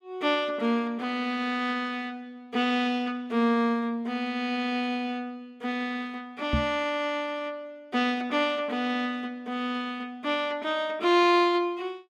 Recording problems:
microphone thump; at 6.5 s; peak +4 dB vs average level

